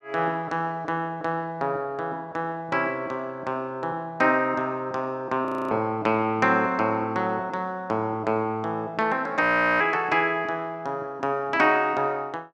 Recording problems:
frozen audio; at 5.5 s and at 9.5 s

